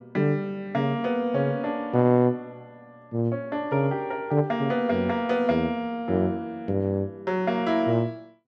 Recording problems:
none

